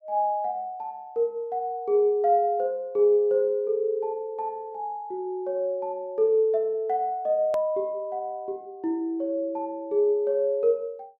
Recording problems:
click at an edit; at 7.5 s

